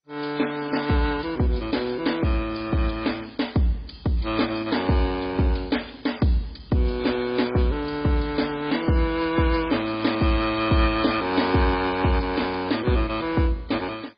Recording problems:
codec artefacts; MP3, then MP2, log-spectral distance 6 dB, nothing above 4.9 kHz

